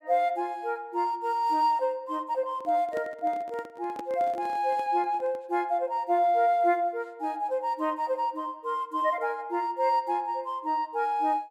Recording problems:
handling noise; from 2.5 to 5.5 s; peak -8 dB vs average level

